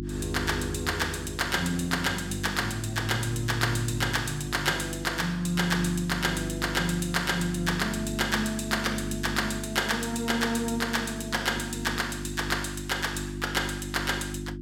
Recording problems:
hum; 50 Hz, harmonics up to 350 Hz, SNR 8 dB

